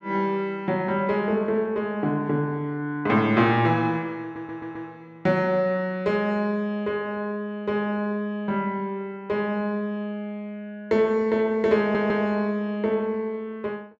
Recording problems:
stutter; at 4 s and at 12 s

